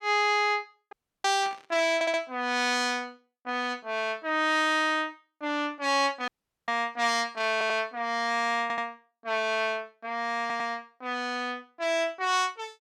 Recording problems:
dropout; at 1 s and at 6.5 s
burst of static; at 1.5 s; peak -12 dB vs average level
stutter; 4 times, first at 2 s

